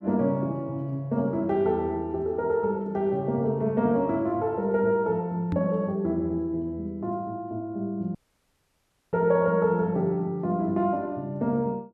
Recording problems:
knock on the microphone; at 5.5 s; peak -2 dB vs average level
dropout; at 8 s for 1 s

